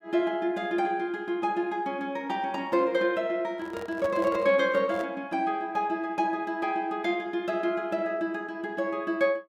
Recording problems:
microphone handling noise; from 3.5 to 5 s; peak -7 dB vs average level

